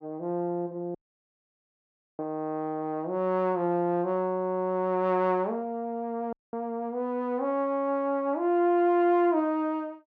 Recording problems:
audio cutting out; at 1 s for 1 s and at 6.5 s

